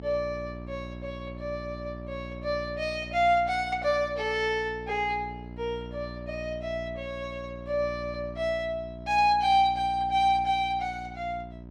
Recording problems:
electrical hum; 60 Hz, harmonics up to 960 Hz, SNR 13 dB

